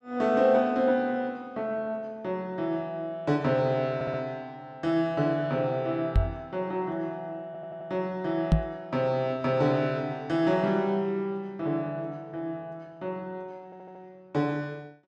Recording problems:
audio stuttering; at 4 s, at 7.5 s and at 14 s
microphone bump; at 6 s and at 8.5 s; peak +10 dB vs average level

